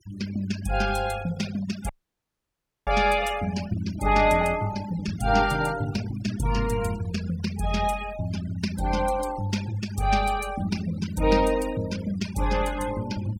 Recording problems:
noise reduction artefacts; signal-to-artefact ratio 16 dB
audio cutting out; at 2 s for 1 s

